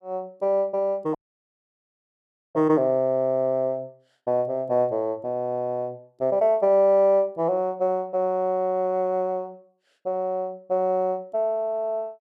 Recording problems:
audio cutting out; at 1 s for 1.5 s

